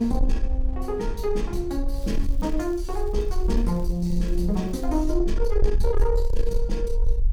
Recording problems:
distortion; soft clipping, signal-to-distortion ratio 11 dB
rumble; below 44 Hz, strongest tone 18 Hz, SNR 2 dB
wind noise; below 160 Hz, SNR 16 dB
crackle; from 2 to 5 s; loose cable, SNR 27 dB

